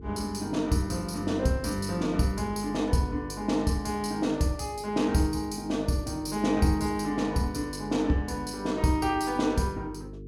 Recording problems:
hum; 50 Hz, harmonics up to 450 Hz, SNR 16 dB

